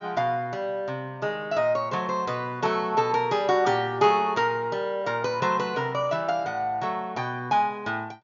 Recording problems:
treble missing; nothing above 7.2 kHz

